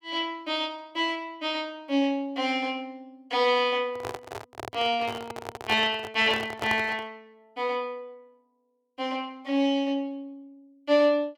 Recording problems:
handling noise; from 4 to 7 s; peak -2 dB vs average level

